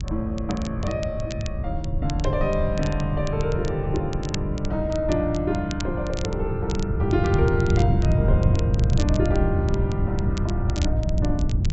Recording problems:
treble missing; nothing above 7.8 kHz
low-frequency rumble; below 84 Hz, SNR 8 dB
wind on the microphone; below 130 Hz, SNR -1 dB
crackling; vinyl, SNR 15 dB

